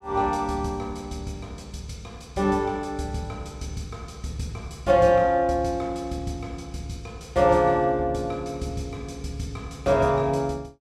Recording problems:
none

